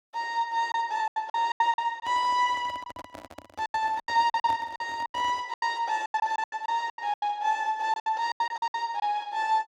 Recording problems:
lost packets; 16% of the sound replaced, filled with silence
handling noise; from 2 to 5.5 s; peak -9 dB vs average level

